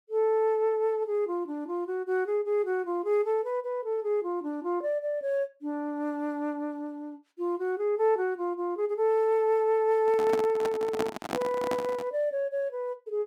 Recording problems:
handling noise; from 10 to 12 s; peak +2 dB vs average level

